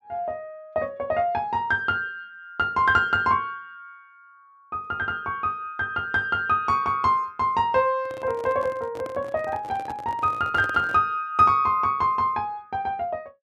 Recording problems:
microphone handling noise; from 8 to 11 s; peak -9 dB vs average level

